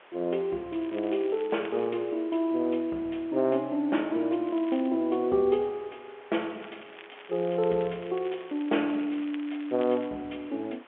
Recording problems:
phone line; 260 Hz to 3.5 kHz, G.711
background hiss; SNR 23 dB
crackle; from 1 to 2 s, at 4.5 s and from 6.5 to 10 s; loose cable, SNR 22 dB

